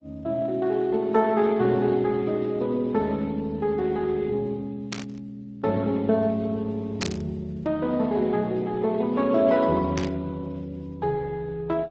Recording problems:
lossy compression; Speex, then Opus, log-spectral distance 2 dB
burst of static; at 5 s, at 7 s and at 10 s; peak +1 dB vs average level

